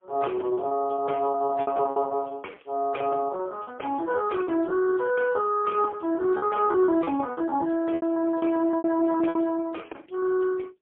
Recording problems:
telephone audio; 260 Hz to 2.3 kHz, AMR-NB, then MP3
lost packets; 13% of the sound replaced, filled with repeated pitch periods

